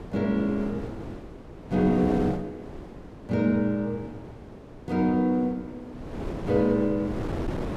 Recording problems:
wind on the microphone; below 480 Hz, SNR 11 dB

